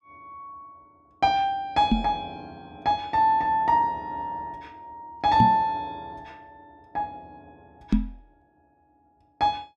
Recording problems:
microphone thump; at 2 s, at 5.5 s and at 8 s; peak +6 dB vs average level

